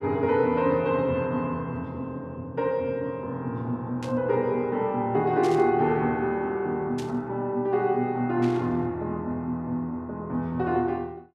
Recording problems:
static burst; 4 times, first at 4 s; peak -9 dB vs average level

